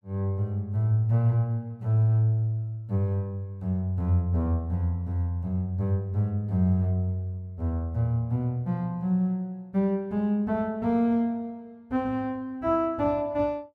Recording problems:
none

